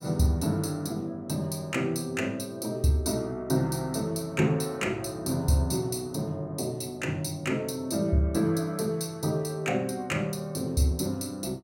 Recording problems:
none

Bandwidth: 16.5 kHz